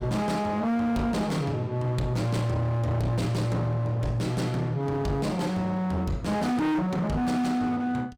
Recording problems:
distortion; hard clipping, signal-to-distortion ratio 8 dB

